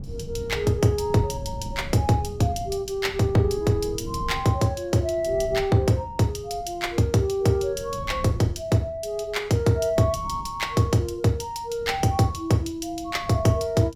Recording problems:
wind noise; below 160 Hz, SNR 15 dB

